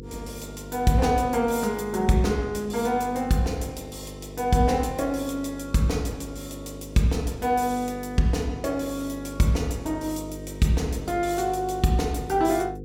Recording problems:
hum; 50 Hz, harmonics up to 500 Hz, SNR 14 dB

